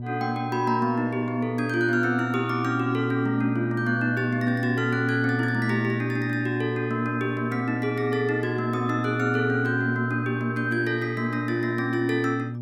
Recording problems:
hum; 60 Hz, harmonics up to 600 Hz, SNR 5 dB

